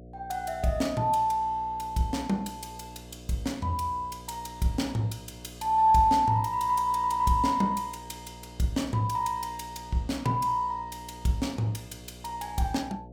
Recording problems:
hum; 60 Hz, harmonics up to 720 Hz, SNR 19 dB

